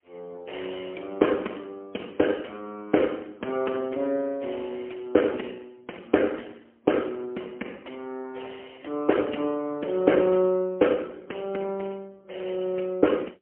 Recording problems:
phone line; 220 Hz to 3.2 kHz, AMR-NB, then MP3

